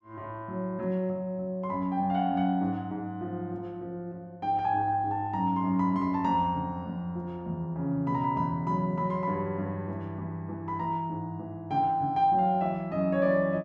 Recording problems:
none

